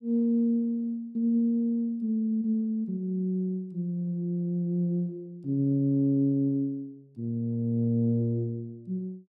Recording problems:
none

